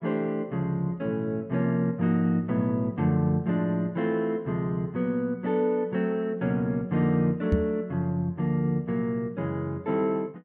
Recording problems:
microphone thump; at 7.5 s; peak +6 dB vs average level

